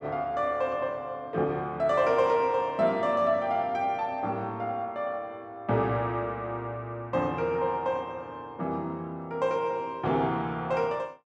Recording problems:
none

